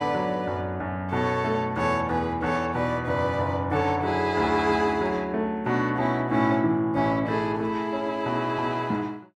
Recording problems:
none

